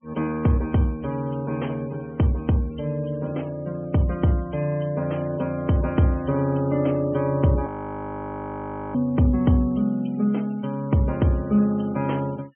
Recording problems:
low-pass filter; nothing above 3.2 kHz
noise reduction artefacts; signal-to-artefact ratio 27 dB
audio freezing; at 7.5 s for 1.5 s

